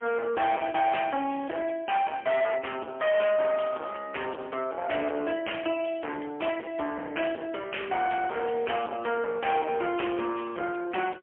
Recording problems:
phone line; 260 Hz to 3.2 kHz, AMR-NB, then MP3
distorted audio; hard clipping, uneven, signal-to-distortion ratio 7 dB

